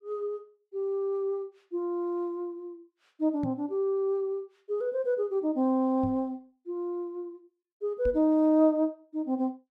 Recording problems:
microphone bump; at 3.5 s, at 6 s and at 8 s; peak -3 dB vs average level

